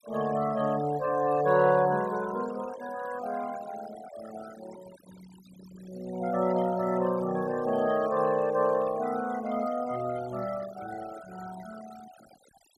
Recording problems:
noise reduction artefacts; signal-to-artefact ratio 18 dB

